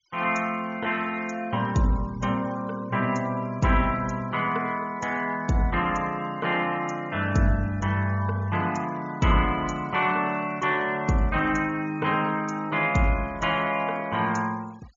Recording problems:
treble cut off; nothing above 7.1 kHz
noise reduction artefacts; signal-to-artefact ratio 25 dB

